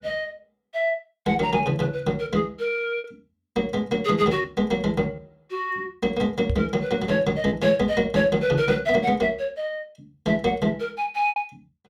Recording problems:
packet loss; 2% of the sound replaced, filled with repeated pitch periods
knock on the microphone; at 6.5 s; peak +2 dB vs average level

